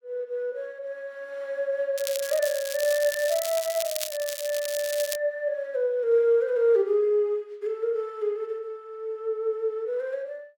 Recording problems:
crackle; from 2 to 5 s; loose cable, SNR 7 dB

